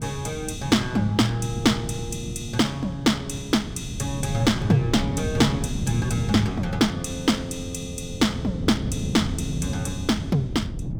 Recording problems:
wind on the microphone; below 200 Hz, SNR 7 dB

